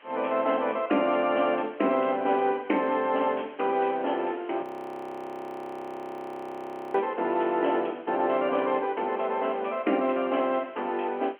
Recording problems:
phone line; 240 Hz to 3.3 kHz, G.711
background hiss; SNR 27 dB
audio freezing; at 4.5 s for 2.5 s

